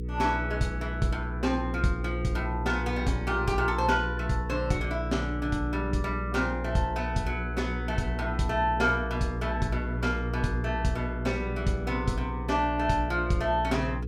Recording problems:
hum; 60 Hz, harmonics up to 480 Hz, SNR 4 dB

